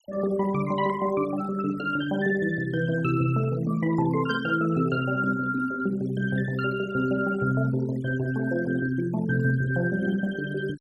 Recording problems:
denoising artefacts; signal-to-artefact ratio 21 dB

